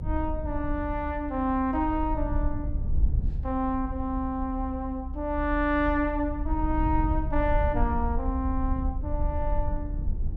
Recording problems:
rumble; below 68 Hz, SNR 3 dB

